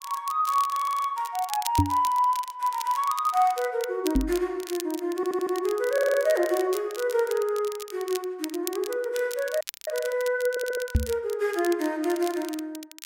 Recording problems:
crackling; vinyl, SNR 13 dB
stutter; 4 times, first at 1 s
knock on the microphone; at 2 s, at 4 s and at 11 s; peak +8 dB vs average level
frozen audio; at 9.5 s

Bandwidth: 16 kHz